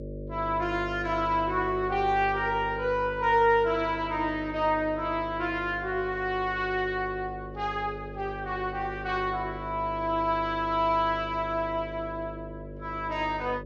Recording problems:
hum; 50 Hz, harmonics up to 600 Hz, SNR 12 dB

